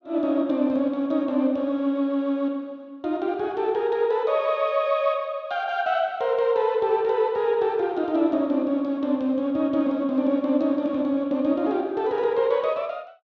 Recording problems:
none

